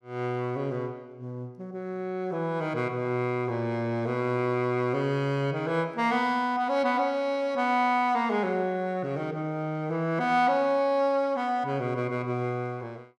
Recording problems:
none

